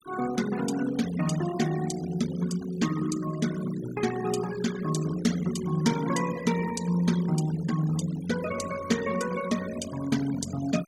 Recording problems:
noise reduction artefacts; signal-to-artefact ratio 13 dB

